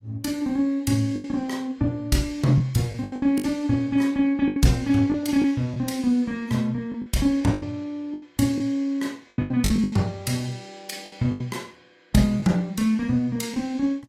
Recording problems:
codec artefacts; AAC, log-spectral distance 2 dB, nothing above 14.7 kHz
lost packets; 9% of the sound replaced, filled with the last packet

